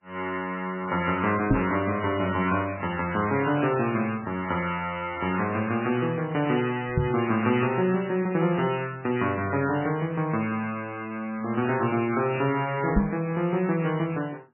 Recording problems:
lossy compression; MP3, log-spectral distance 4 dB, nothing above 2.5 kHz
microphone thump; at 1.5 s, at 7 s and at 13 s; peak +7 dB vs average level

